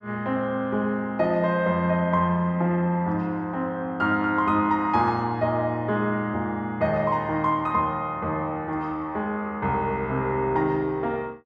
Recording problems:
none

